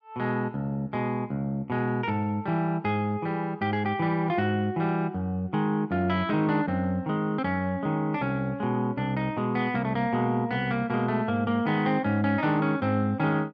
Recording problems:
none

